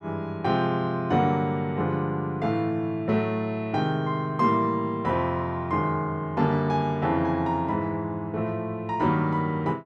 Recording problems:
none

